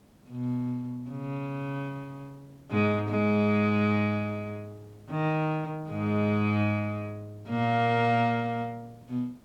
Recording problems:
hiss; slope -6 dB per octave, SNR 29 dB

